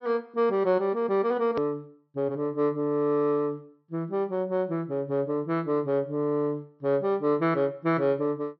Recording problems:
treble missing; nothing above 5.7 kHz
edit click; at 1.5 s

